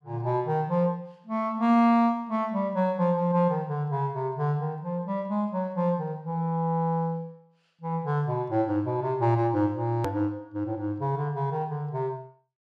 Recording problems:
click at an edit; at 10 s

